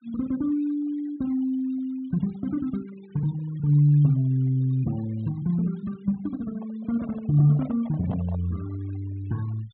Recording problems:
low-pass filter; nothing above 4 kHz
denoising artefacts; signal-to-artefact ratio 24 dB
microphone handling noise; from 6.5 to 8.5 s; peak -10 dB vs average level

